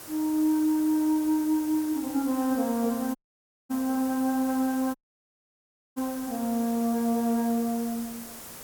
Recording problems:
hiss; SNR 14 dB
dropout; at 3 s for 0.5 s and at 5 s for 1 s

